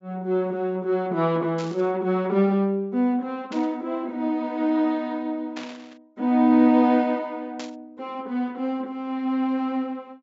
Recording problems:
treble missing; nothing above 8 kHz
burst of static; 4 times, first at 1.5 s; peak -9 dB vs average level

